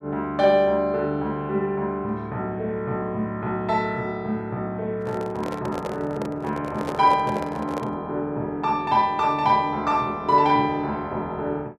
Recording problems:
microphone handling noise; from 5 to 8 s; peak -2 dB vs average level

